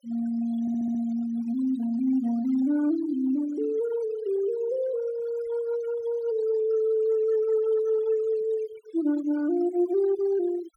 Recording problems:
noise reduction artefacts; signal-to-artefact ratio 21 dB
audio stuttering; at 0.5 s

